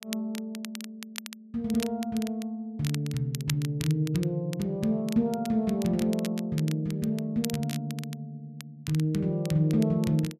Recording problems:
crackling; vinyl, SNR 14 dB

